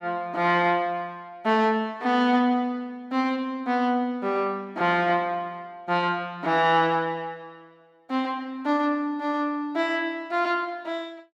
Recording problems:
none

